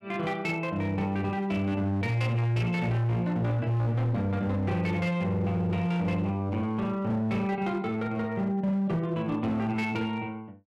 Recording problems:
distortion; hard clipping, signal-to-distortion ratio 11 dB

